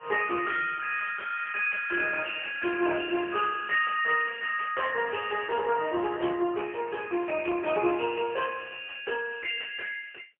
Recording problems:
telephone audio; 320 Hz to 2.8 kHz, AMR-NB, then MP3

